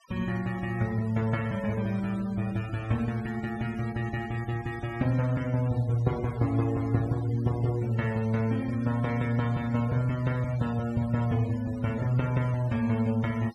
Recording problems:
denoising artefacts; signal-to-artefact ratio 20 dB

